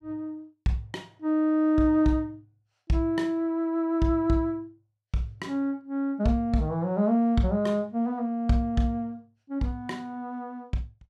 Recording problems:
none

